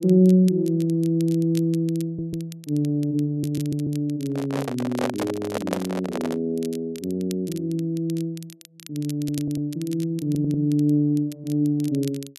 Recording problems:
crackling; vinyl, SNR 20 dB
stutter; 4 times, first at 2 s
microphone handling noise; from 4.5 to 6.5 s; peak +2 dB vs average level

